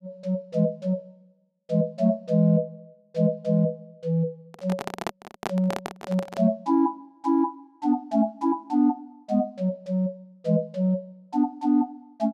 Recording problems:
microphone handling noise; from 4.5 to 6.5 s; peak 0 dB vs average level

